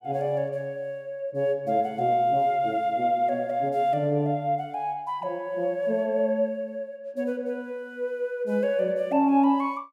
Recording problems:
none

